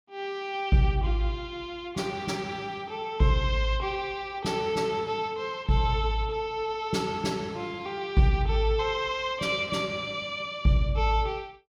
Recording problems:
none

